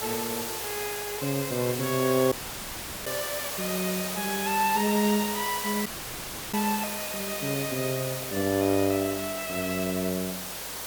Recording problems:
hum; 50 Hz, harmonics up to 550 Hz, SNR 24 dB
hiss; SNR 4 dB
dropout; at 2.5 s for 0.5 s and at 6 s for 0.5 s

